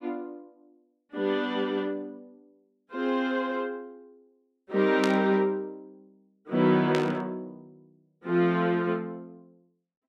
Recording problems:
burst of static; at 5 s and at 7 s; peak -1 dB vs average level

